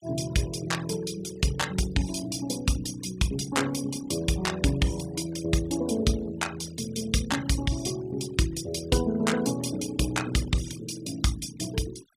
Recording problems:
denoising artefacts; signal-to-artefact ratio 16 dB

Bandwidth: 15 kHz